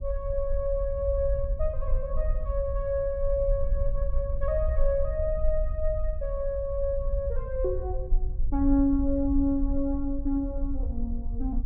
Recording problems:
low-frequency rumble; below 54 Hz, SNR 3 dB

